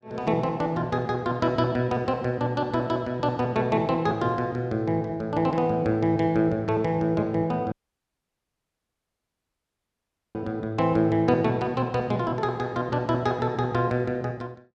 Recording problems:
audio cutting out; at 7.5 s for 2.5 s

